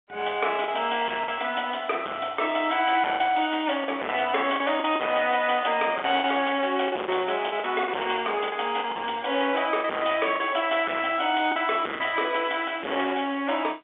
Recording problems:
telephone audio; 320 Hz to 3.6 kHz, G.711
distortion; hard clipping, signal-to-distortion ratio 10 dB
packet loss; 6% of the sound replaced, filled with the last packet

